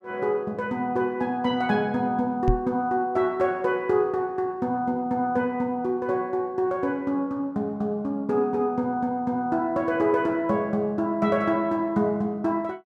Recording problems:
microphone thump; at 2.5 s; peak +5 dB vs average level

